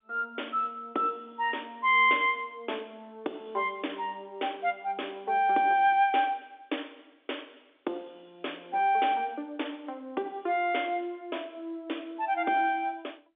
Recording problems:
phone line; 260 Hz to 3.6 kHz, G.711

